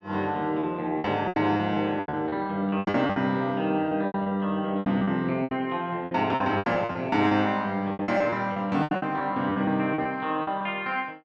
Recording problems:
packet loss; 16% of the sound replaced, filled with repeated pitch periods

